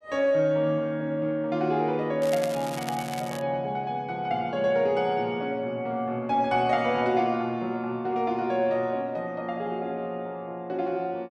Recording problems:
crackling; from 2 to 3.5 s; loose cable, SNR 13 dB

